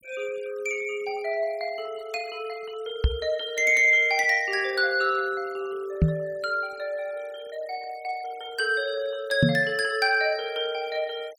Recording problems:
denoising artefacts; signal-to-artefact ratio 24 dB
microphone bump; at 3 s, at 6 s and at 9.5 s; peak +8 dB vs average level

